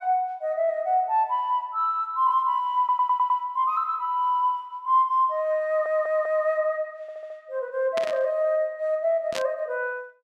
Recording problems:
audio stuttering; at 3 s, at 5.5 s and at 7 s
static burst; at 8 s and at 9.5 s; peak -3 dB vs average level

